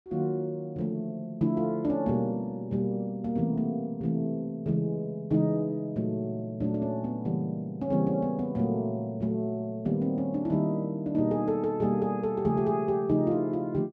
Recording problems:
none

